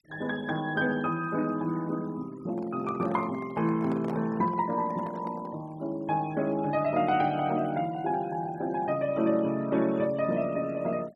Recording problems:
denoising artefacts; signal-to-artefact ratio 23 dB
handling noise; from 2.5 to 5.5 s; peak -7 dB vs average level

